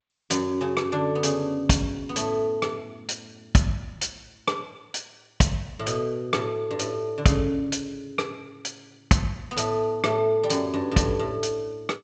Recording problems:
lossy compression; G.722, log-spectral distance 3 dB

